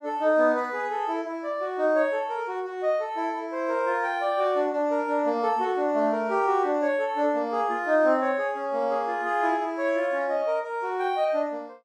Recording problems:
none

